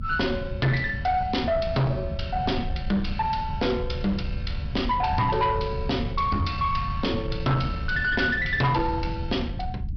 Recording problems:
treble cut off; nothing above 5.5 kHz
distorted audio; soft clipping, signal-to-distortion ratio 10 dB
low-frequency rumble; below 140 Hz, SNR 7 dB

